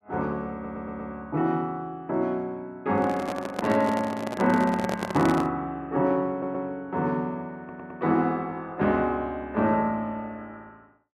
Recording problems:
stutter; at 0.5 s, at 6.5 s and at 7.5 s
handling noise; from 3 to 5.5 s; peak +1 dB vs average level

